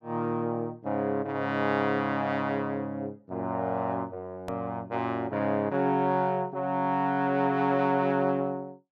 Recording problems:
edit click; at 4.5 s

